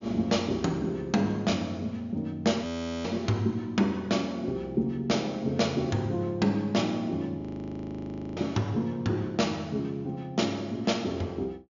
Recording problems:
treble missing; nothing above 7.1 kHz
frozen audio; at 2.5 s and at 7.5 s for 1 s

